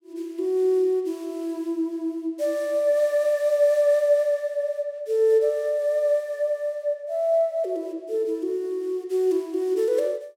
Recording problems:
none

